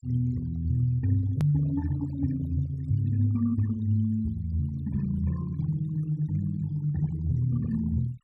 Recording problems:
denoising artefacts; signal-to-artefact ratio 22 dB
hard cut with a click; at 1.5 s

